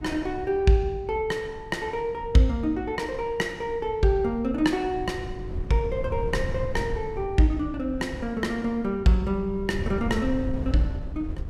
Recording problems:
wind on the microphone; below 110 Hz, SNR 11 dB

